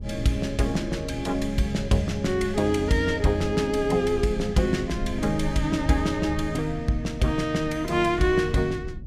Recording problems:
rumble; below 110 Hz, SNR 12 dB

